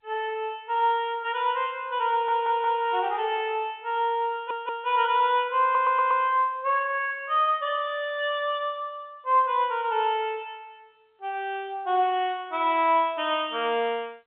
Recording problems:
telephone audio; 260 Hz to 3.3 kHz, G.711
stutter; at 2 s, at 4.5 s and at 5.5 s

